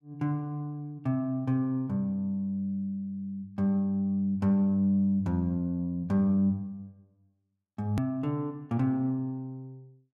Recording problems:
click at an edit; at 8 s

